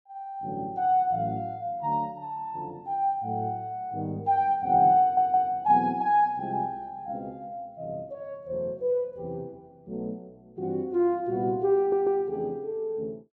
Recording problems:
stutter; at 5 s and at 12 s

